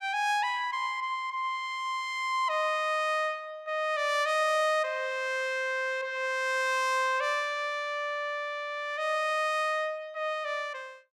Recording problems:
none

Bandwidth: 15.5 kHz